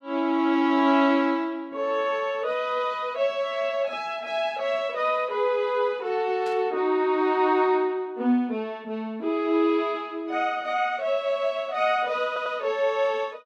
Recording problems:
burst of static; at 6.5 s; peak -15 dB vs average level
audio stuttering; at 12 s

